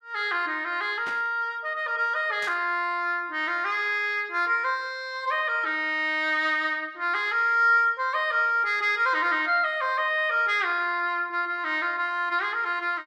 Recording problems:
burst of static; at 1 s and at 2.5 s; peak -10 dB vs average level

